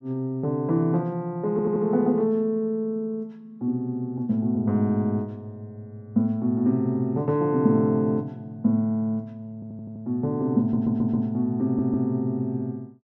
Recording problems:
audio stuttering; 4 times, first at 1.5 s

